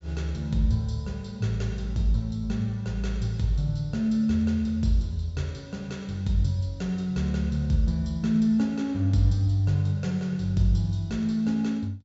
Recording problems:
treble missing; nothing above 8 kHz

